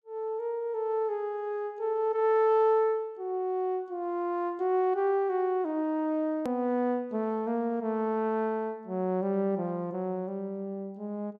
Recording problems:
hard cut with a click; at 6.5 s

